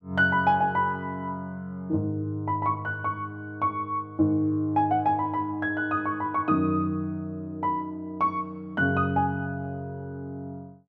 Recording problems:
none

